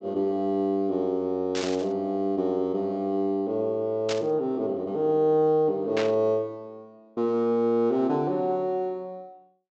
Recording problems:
treble cut off; nothing above 8 kHz
static burst; at 1.5 s, at 4 s and at 6 s; peak -2 dB vs average level

